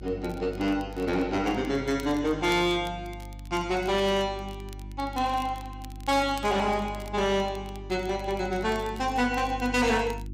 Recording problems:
distortion; hard clipping, uneven, signal-to-distortion ratio 11 dB
electrical hum; 50 Hz, harmonics up to 350 Hz, SNR 14 dB
crackle; vinyl, SNR 24 dB

